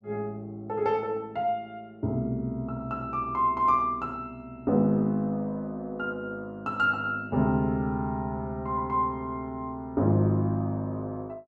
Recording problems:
none

